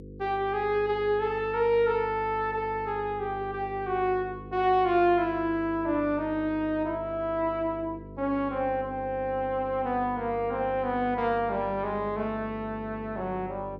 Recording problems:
hum; 50 Hz, harmonics up to 500 Hz, SNR 15 dB

